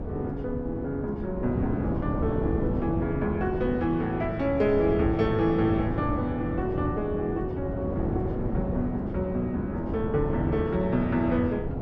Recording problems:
wind noise; below 350 Hz, SNR 4 dB

